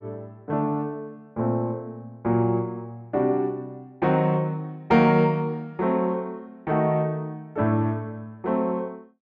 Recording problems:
none

